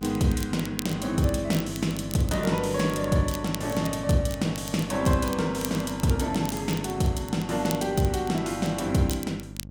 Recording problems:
hum; 50 Hz, harmonics up to 600 Hz, SNR 13 dB
crackle; vinyl, SNR 15 dB

